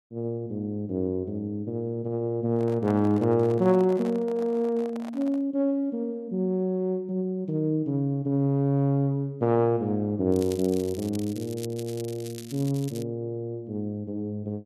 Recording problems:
handling noise; from 2.5 to 5.5 s; peak -10 dB vs average level
crackle; from 10 to 13 s; loose cable, SNR 17 dB

